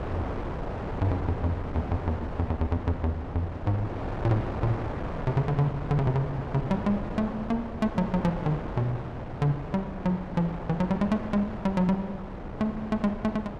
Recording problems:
wind noise; below 700 Hz, SNR 7 dB

